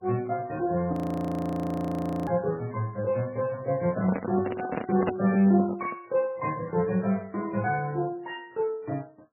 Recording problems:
lossy codec; MP3, log-spectral distance 3 dB, nothing above 17.7 kHz
frozen audio; at 1 s for 1.5 s
microphone handling noise; from 4 to 6 s; peak +3 dB vs average level

